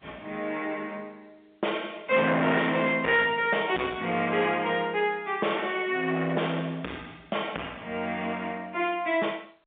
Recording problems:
phone line; 280 Hz to 3.6 kHz, G.711
distorted audio; soft clipping, signal-to-distortion ratio 8 dB

